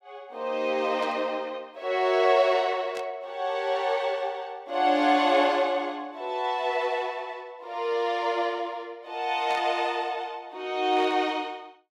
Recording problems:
burst of static; 4 times, first at 1 s; peak -11 dB vs average level

